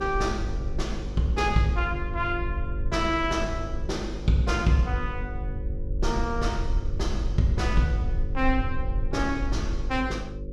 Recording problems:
hum; 50 Hz, harmonics up to 550 Hz, SNR 9 dB
rumble; below 62 Hz, SNR 6 dB

